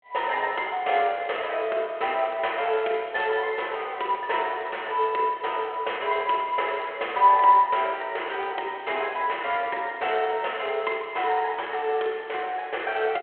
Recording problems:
phone line; 340 Hz to 3.3 kHz, G.726

